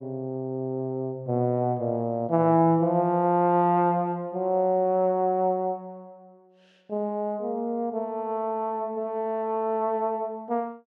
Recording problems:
none

